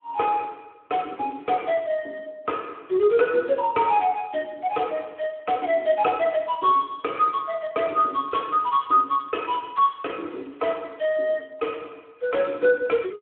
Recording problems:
telephone audio; 260 Hz to 3.3 kHz, Speex

